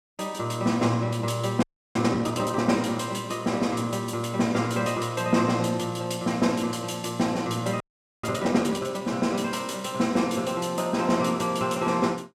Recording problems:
audio freezing; at 1.5 s and at 8 s

